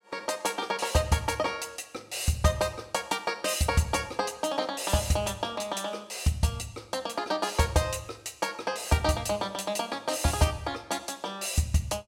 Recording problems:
none

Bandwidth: 16 kHz